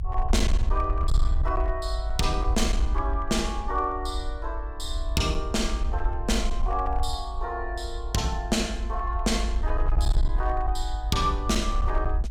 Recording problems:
distorted audio; hard clipping, uneven, signal-to-distortion ratio 11 dB
low-frequency rumble; below 56 Hz, SNR 1 dB

